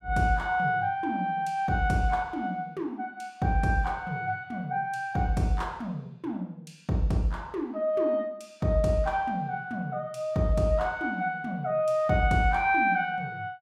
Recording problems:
none

